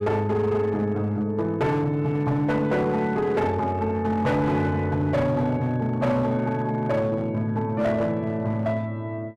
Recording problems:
distorted audio; hard clipping, uneven, signal-to-distortion ratio 12 dB

